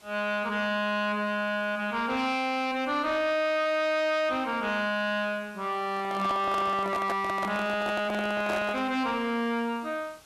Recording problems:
distortion; soft clipping, signal-to-distortion ratio 12 dB
hiss; slope -1 dB per octave, SNR 27 dB
microphone handling noise; from 6 to 9 s; peak 0 dB vs average level

